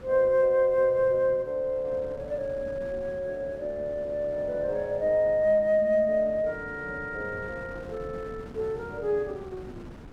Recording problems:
wind on the microphone; below 450 Hz, SNR 18 dB

